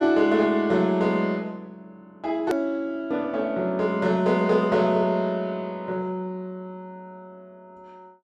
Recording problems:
hard cut with a click; at 2.5 s

